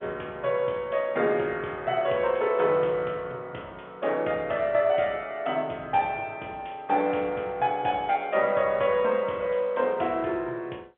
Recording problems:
telephone audio; 260 Hz to 3.4 kHz, G.711

